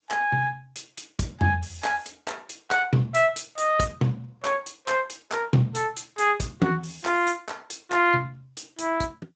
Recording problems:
lossy codec; G.722, then Speex, log-spectral distance 7 dB, nothing above 7.8 kHz

